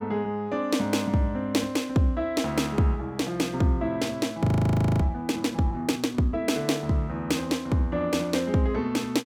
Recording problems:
frozen audio; at 4.5 s for 0.5 s

